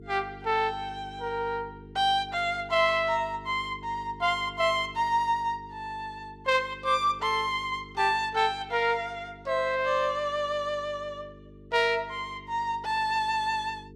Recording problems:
mains hum; 50 Hz, harmonics up to 450 Hz, SNR 20 dB

